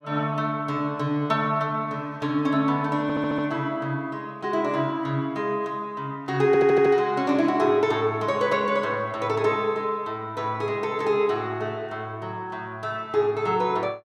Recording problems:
stutter; at 3 s and at 6.5 s

